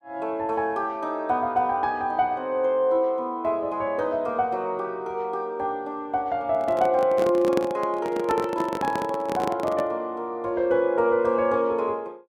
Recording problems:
microphone handling noise; from 6.5 to 10 s; peak +2 dB vs average level

